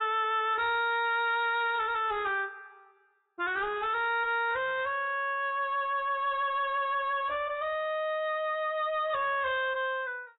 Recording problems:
codec artefacts; AAC, log-spectral distance 3 dB, nothing above 3.4 kHz
distorted audio; soft clipping, signal-to-distortion ratio 11 dB

